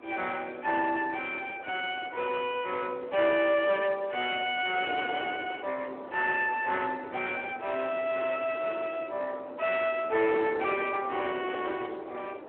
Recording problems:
telephone audio; 280 Hz to 3.1 kHz, Speex
distorted audio; soft clipping, signal-to-distortion ratio 12 dB
wind on the microphone; below 860 Hz, SNR 13 dB

